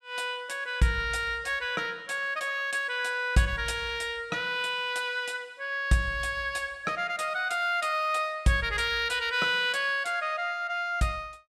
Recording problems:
none

